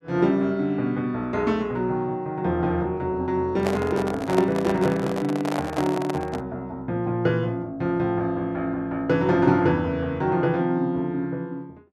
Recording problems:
handling noise; from 3.5 to 6.5 s; peak +1 dB vs average level

